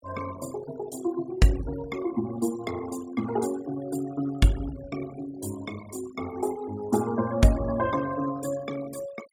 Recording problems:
noise reduction artefacts; signal-to-artefact ratio 15 dB

